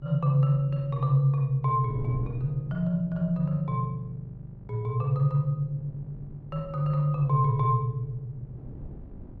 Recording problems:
hum; 50 Hz, harmonics up to 600 Hz, SNR 23 dB
wind noise; below 220 Hz, SNR 20 dB

